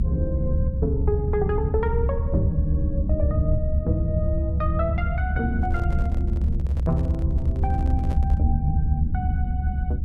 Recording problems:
mains hum; 60 Hz, harmonics up to 540 Hz, SNR 23 dB
low-frequency rumble; below 84 Hz, SNR -4 dB
microphone handling noise; from 5.5 to 8.5 s; peak -7 dB vs average level

